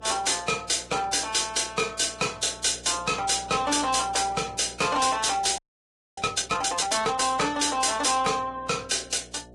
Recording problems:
codec artefacts; Vorbis, log-spectral distance 7 dB, nothing above 10.1 kHz
distorted audio; soft clipping, signal-to-distortion ratio 11 dB
hum; 60 Hz, harmonics up to 720 Hz, SNR 24 dB
frozen audio; at 5.5 s for 0.5 s

